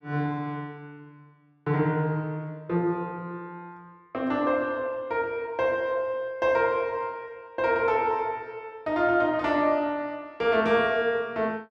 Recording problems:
none

